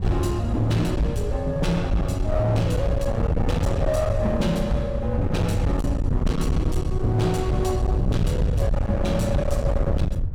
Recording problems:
distortion; hard clipping, signal-to-distortion ratio 8 dB
wind noise; below 110 Hz, SNR 3 dB

